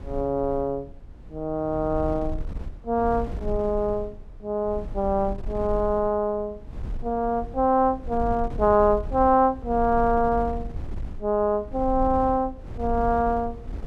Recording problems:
wind noise; below 76 Hz, SNR 12 dB

